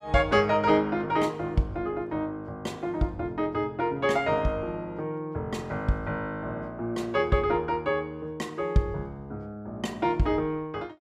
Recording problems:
none

